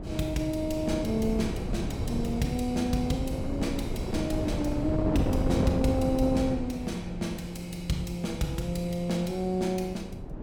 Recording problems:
wind noise; below 310 Hz, SNR 3 dB

